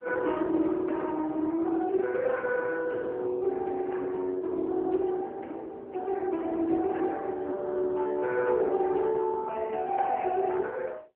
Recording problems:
telephone audio; 280 Hz to 3.2 kHz, AMR-NB

